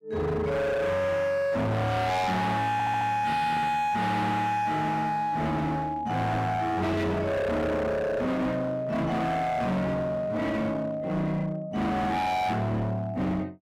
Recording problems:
distortion; hard clipping, uneven, signal-to-distortion ratio 6 dB
stutter; at 2.5 s

